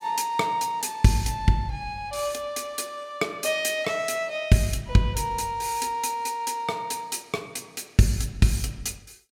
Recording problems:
none

